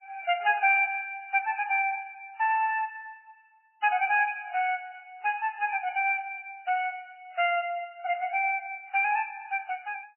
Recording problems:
lossy codec; MP3, log-spectral distance 4 dB, nothing above 2.4 kHz

